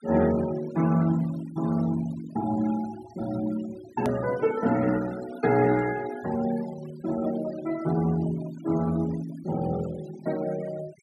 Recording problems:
denoising artefacts; signal-to-artefact ratio 18 dB
edit click; at 4 s

